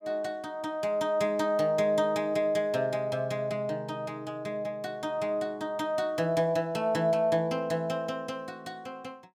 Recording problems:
none

